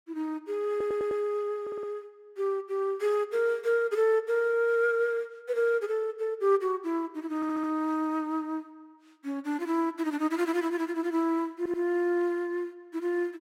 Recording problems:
stutter; 4 times, first at 0.5 s

